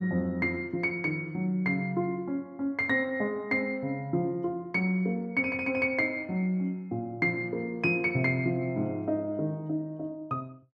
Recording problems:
none

